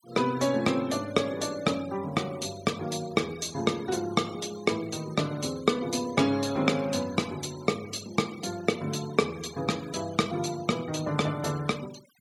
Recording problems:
noise reduction artefacts; signal-to-artefact ratio 19 dB

